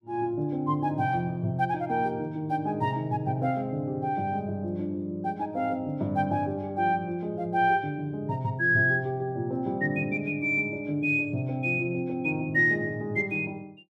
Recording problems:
none

